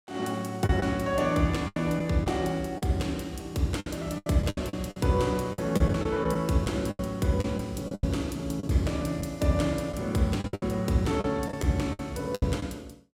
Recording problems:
packet loss; 10% of the sound replaced, filled with the last packet

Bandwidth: 16 kHz